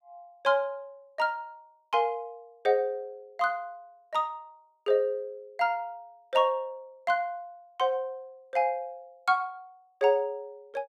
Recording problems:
none

